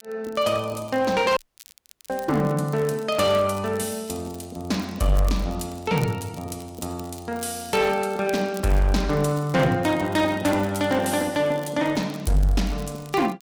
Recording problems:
lossy compression; Vorbis, log-spectral distance 3 dB, nothing above 16 kHz
distortion; hard clipping, uneven, signal-to-distortion ratio 9 dB
crackling; vinyl, SNR 22 dB
audio cutting out; at 1.5 s for 0.5 s

